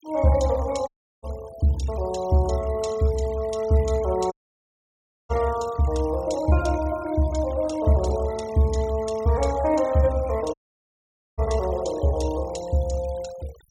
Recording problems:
denoising artefacts; signal-to-artefact ratio 20 dB
dropout; at 1 s, at 4.5 s for 1 s and at 11 s for 1 s

